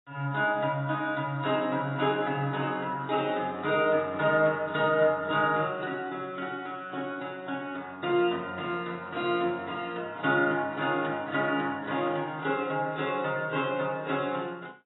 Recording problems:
codec artefacts; AAC, log-spectral distance 3 dB, nothing above 3.9 kHz

